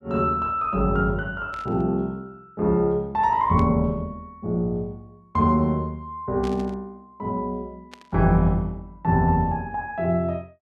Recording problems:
burst of static; 4 times, first at 1.5 s; peak -13 dB vs average level

